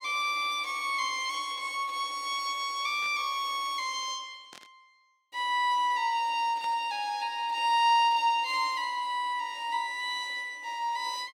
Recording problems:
burst of static; at 3 s, at 4.5 s and at 6.5 s; peak -15 dB vs average level

